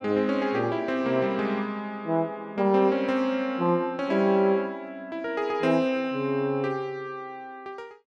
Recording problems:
none

